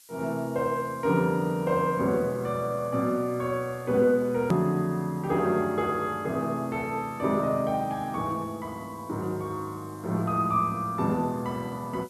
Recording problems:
hiss; SNR 25 dB
click at an edit; at 4.5 s

